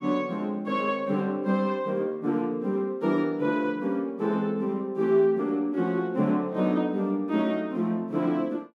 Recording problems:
none

